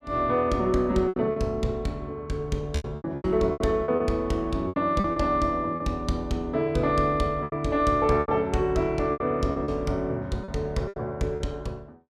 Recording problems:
packet loss; 10% of the sound replaced, filled with repeated pitch periods

